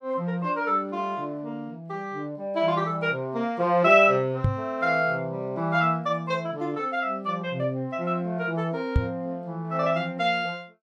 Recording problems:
microphone thump; at 4.5 s and at 9 s; peak +6 dB vs average level

